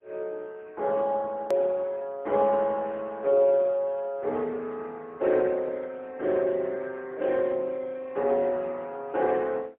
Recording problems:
phone line; 280 Hz to 3.2 kHz, AMR-NB, then MP3
hard cut with a click; at 1.5 s

